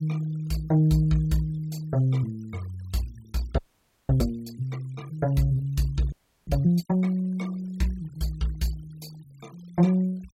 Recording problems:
denoising artefacts; signal-to-artefact ratio 26 dB
frozen audio; at 3.5 s for 0.5 s and at 6 s

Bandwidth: 16 kHz